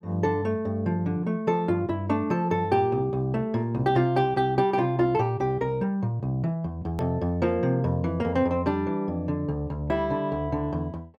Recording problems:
edit click; at 7 s

